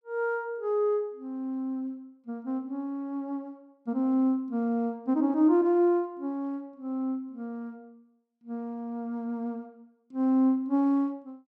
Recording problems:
none

